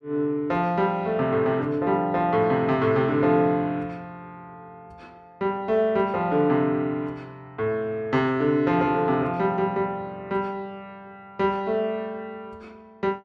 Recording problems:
none

